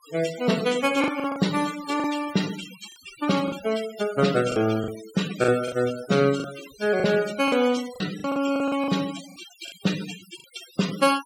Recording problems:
noise reduction artefacts; signal-to-artefact ratio 13 dB
packet loss; 9% of the sound replaced, filled with the last packet

